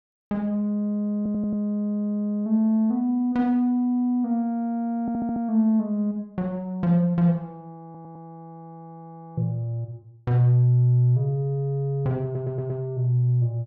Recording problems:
audio stuttering; 4 times, first at 1 s

